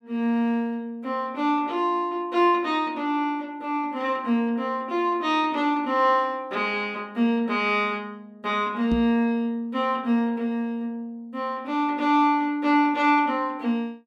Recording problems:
microphone bump; at 9 s; peak +1 dB vs average level

